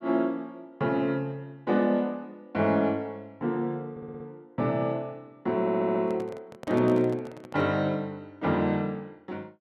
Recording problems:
audio stuttering; at 4 s and at 5.5 s
microphone handling noise; from 6 to 7.5 s; peak -7 dB vs average level

